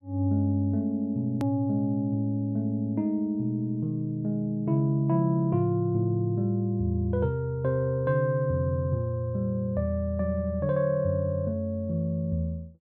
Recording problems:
hard cut with a click; at 1.5 s

